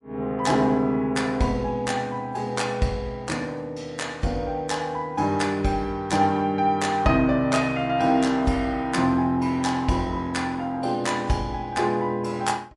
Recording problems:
codec artefacts; MP3, log-spectral distance 2 dB, nothing above 11 kHz

